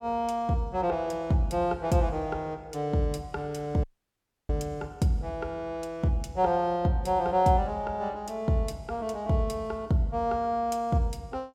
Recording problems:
audio cutting out; at 4 s for 0.5 s

